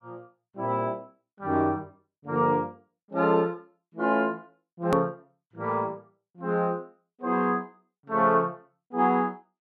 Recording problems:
hard cut with a click; at 5 s

